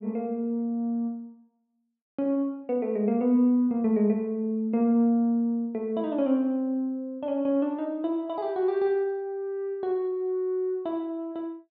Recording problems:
none

